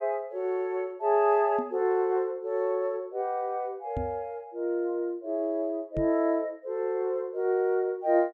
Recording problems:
knock on the microphone; at 1.5 s, at 4 s and at 6 s; peak -2 dB vs average level

